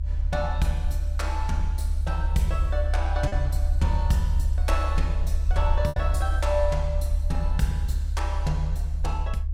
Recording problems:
low-frequency rumble; below 72 Hz, strongest tone 40 Hz, SNR -4 dB
lost packets; 1.3% of the sound replaced, filled with repeated pitch periods

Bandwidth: 16.5 kHz